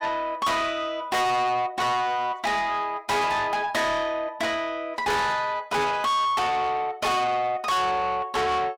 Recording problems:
distortion; soft clipping, signal-to-distortion ratio 6 dB

